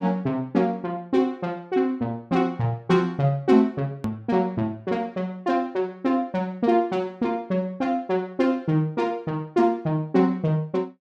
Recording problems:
hard cut with a click; at 4 s

